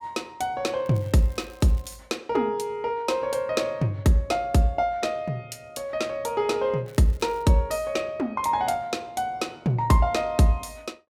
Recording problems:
crackling; from 1 to 2 s and at 7 s; loose cable, SNR 28 dB

